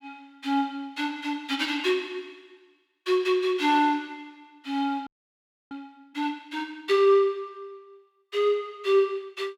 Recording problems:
frozen audio; at 5 s for 0.5 s

